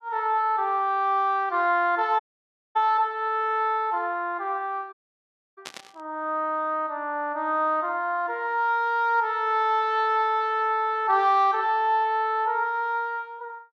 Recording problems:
dropout; at 2 s for 0.5 s and at 5 s for 0.5 s
static burst; at 5.5 s; peak -8 dB vs average level

